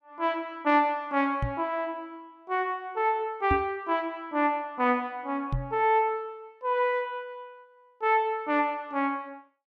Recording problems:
knock on the microphone; at 1.5 s, at 3.5 s and at 5.5 s; peak +2 dB vs average level

